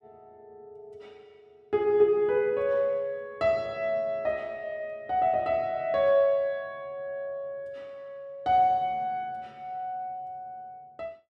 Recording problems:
none

